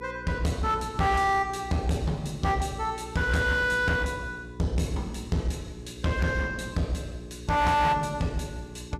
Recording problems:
distorted audio; hard clipping, uneven, signal-to-distortion ratio 10 dB
electrical hum; 60 Hz, harmonics up to 420 Hz, SNR 16 dB

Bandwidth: 14.5 kHz